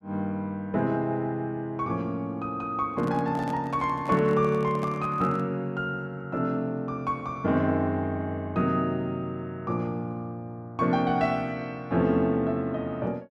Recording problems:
microphone handling noise; from 3 to 5.5 s; peak -6 dB vs average level

